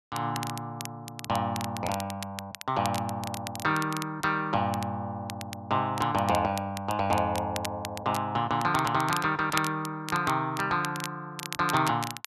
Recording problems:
crackle; vinyl, SNR 11 dB

